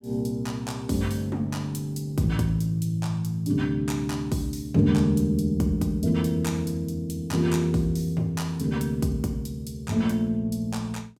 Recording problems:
none

